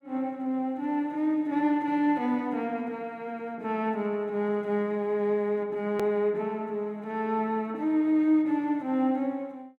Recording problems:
hard cut with a click; at 6 s

